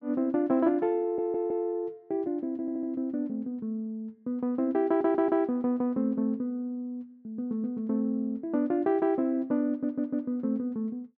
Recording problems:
audio stuttering; 4 times, first at 1 s

